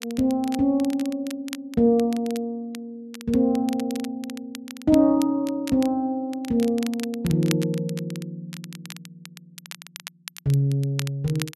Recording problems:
crackle; vinyl, SNR 17 dB

